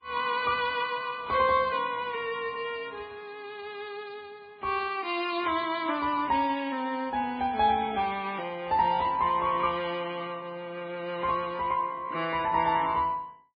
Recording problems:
codec artefacts; MP3, then MP3, log-spectral distance 2 dB, nothing above 4.5 kHz

